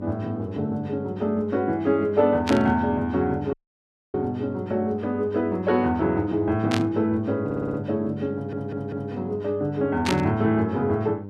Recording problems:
hum; 50 Hz, harmonics up to 1 kHz, SNR 12 dB
burst of static; at 2.5 s, at 6.5 s and at 10 s; peak +2 dB vs average level
audio cutting out; at 3.5 s for 0.5 s
audio stuttering; at 7.5 s and at 8.5 s

